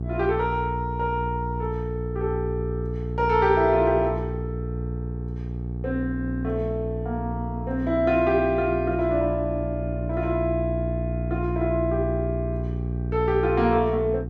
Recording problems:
hum; 60 Hz, harmonics up to 480 Hz, SNR 5 dB

